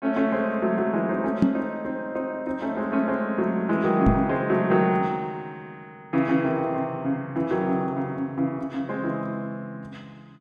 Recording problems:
microphone bump; at 1.5 s and at 4 s; peak +8 dB vs average level

